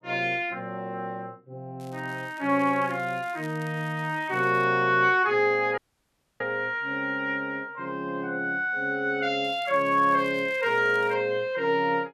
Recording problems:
crackle; from 2 to 4.5 s and from 9.5 to 11 s; loose cable, SNR 27 dB
dropout; at 6 s for 0.5 s

